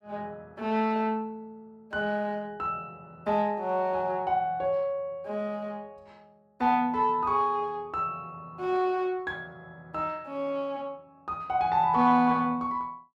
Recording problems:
none

